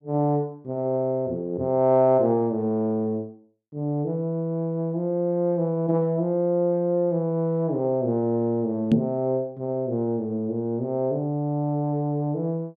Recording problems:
knock on the microphone; at 9 s; peak +7 dB vs average level

